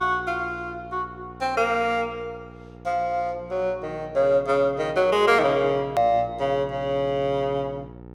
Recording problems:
hum; 60 Hz, harmonics up to 1.4 kHz, SNR 19 dB
click at an edit; at 6 s

